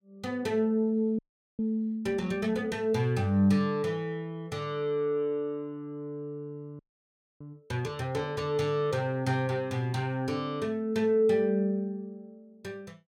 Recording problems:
audio freezing; at 1 s and at 7 s for 0.5 s

